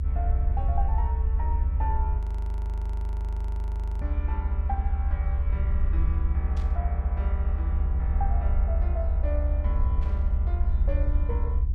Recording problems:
rumble; below 72 Hz, SNR -12 dB
audio freezing; at 2 s for 2 s
static burst; at 6.5 s and at 10 s; peak -6 dB vs average level

